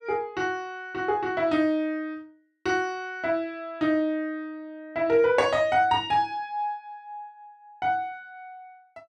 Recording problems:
none

